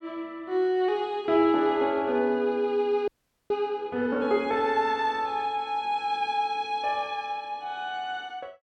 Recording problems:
frozen audio; at 3 s

